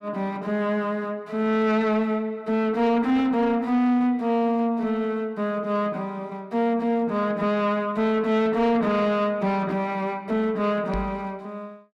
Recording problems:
distortion; soft clipping, signal-to-distortion ratio 12 dB
microphone bump; at 11 s; peak +1 dB vs average level

